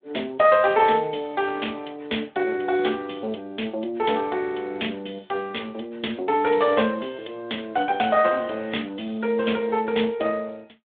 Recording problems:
phone line; 260 Hz to 3.6 kHz, Speex

